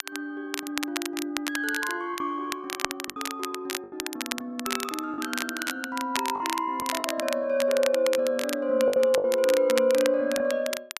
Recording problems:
crackling; vinyl, SNR 7 dB
packet loss; 5% of the sound replaced, filled with the last packet

